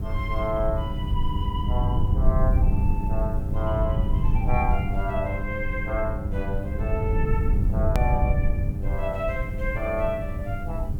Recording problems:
hum; 50 Hz, harmonics up to 900 Hz, SNR 6 dB
hiss; slope -4 dB per octave, SNR 27 dB
low-frequency rumble; below 94 Hz, SNR -4 dB
click at an edit; at 8 s

